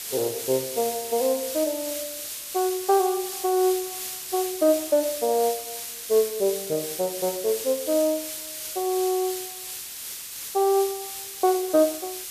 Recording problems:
background hiss; SNR 7 dB

